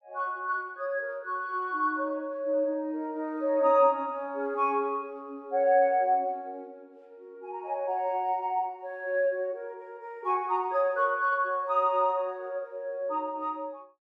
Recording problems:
none

